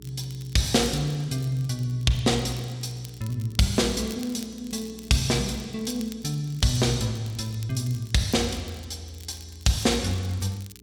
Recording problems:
hum; 60 Hz, harmonics up to 420 Hz, SNR 23 dB
crackling; vinyl, SNR 21 dB

